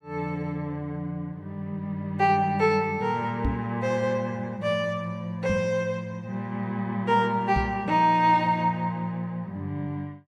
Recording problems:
microphone bump; at 3.5 s, at 5.5 s and at 7.5 s; peak +3 dB vs average level

